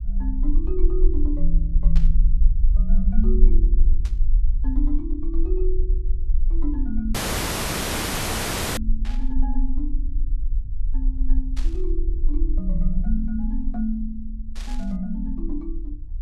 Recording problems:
low-frequency rumble; below 40 Hz, strongest tone 20 Hz, SNR -6 dB
burst of static; 5 times, first at 2 s; peak -5 dB vs average level
audio cutting out; at 7 s for 1.5 s

